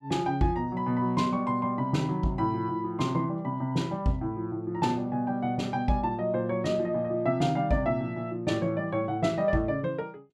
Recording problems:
none

